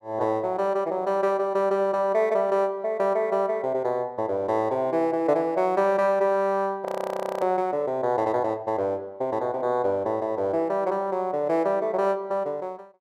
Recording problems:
audio freezing; at 7 s for 0.5 s

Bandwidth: 14 kHz